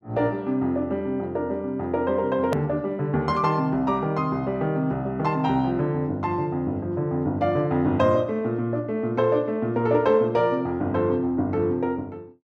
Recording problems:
edit click; at 2.5 s

